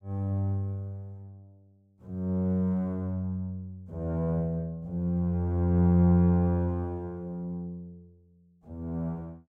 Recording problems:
none

